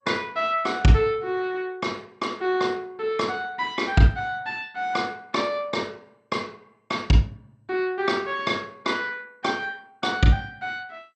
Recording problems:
lossy compression; MP2, log-spectral distance 2 dB, nothing above 7.1 kHz

